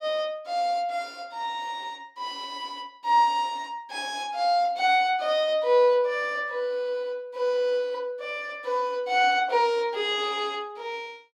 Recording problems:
none

